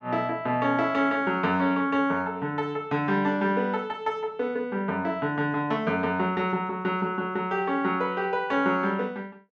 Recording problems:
none

